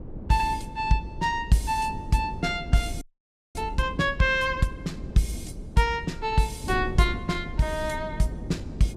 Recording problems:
wind noise; below 220 Hz, SNR 11 dB
frozen audio; at 3 s for 0.5 s

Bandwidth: 15 kHz